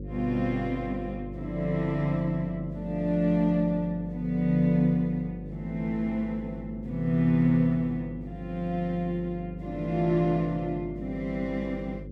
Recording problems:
electrical hum; 50 Hz, harmonics up to 550 Hz, SNR 12 dB

